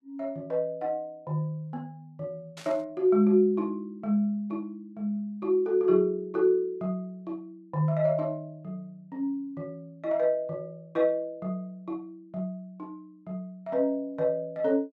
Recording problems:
static burst; at 2.5 s; peak -11 dB vs average level

